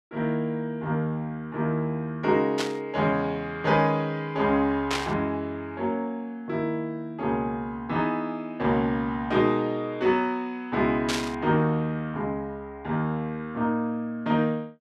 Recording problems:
static burst; at 2.5 s, at 5 s and at 11 s; peak +2 dB vs average level

